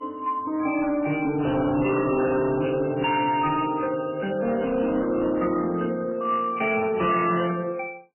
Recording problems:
lossy codec; MP3, log-spectral distance 5 dB, nothing above 2.7 kHz
distortion; hard clipping, uneven, signal-to-distortion ratio 10 dB

